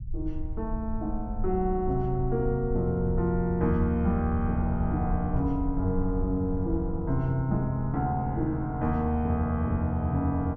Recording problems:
rumble; below 70 Hz, SNR 9 dB

